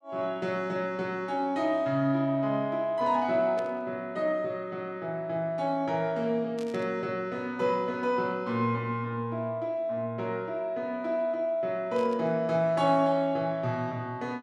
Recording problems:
burst of static; at 3.5 s, at 6.5 s and at 12 s; peak -13 dB vs average level

